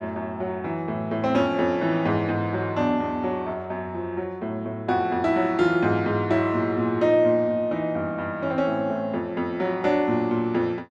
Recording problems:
none

